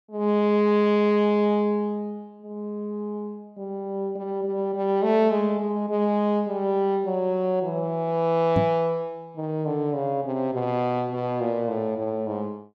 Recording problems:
microphone bump; at 8.5 s; peak +3 dB vs average level

